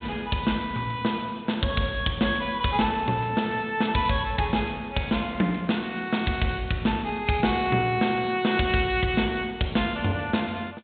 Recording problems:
low-pass filter; nothing above 4 kHz

